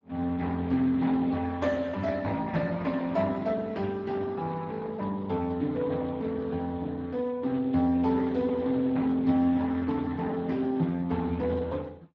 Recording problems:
lossy compression; Speex, log-spectral distance 3 dB

